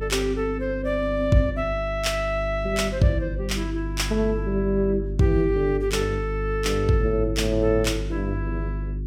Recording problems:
hum; 50 Hz, harmonics up to 400 Hz, SNR 7 dB

